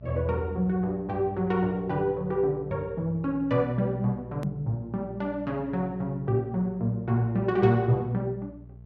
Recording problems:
electrical hum; 60 Hz, harmonics up to 660 Hz, SNR 19 dB
hard cut with a click; at 4.5 s

